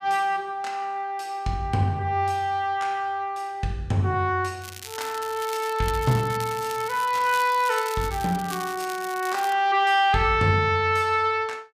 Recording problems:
crackling; from 4.5 to 9.5 s; loose cable, SNR 14 dB

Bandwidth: 15 kHz